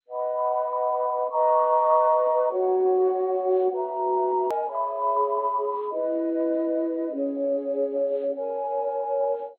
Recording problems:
codec artefacts; MP2, log-spectral distance 2 dB
click at an edit; at 4.5 s

